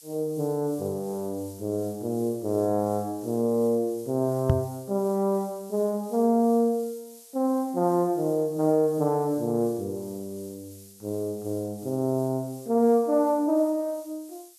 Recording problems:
hiss; SNR 22 dB
knock on the microphone; at 4.5 s; peak +6 dB vs average level

